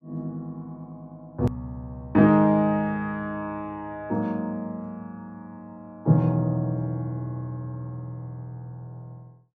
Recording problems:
click at an edit; at 1.5 s

